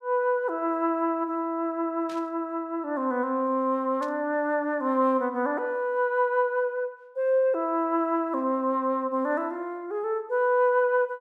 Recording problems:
static burst; at 2 s and at 4 s; peak -16 dB vs average level

